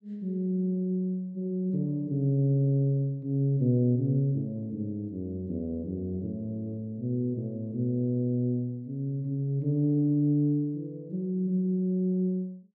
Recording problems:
none

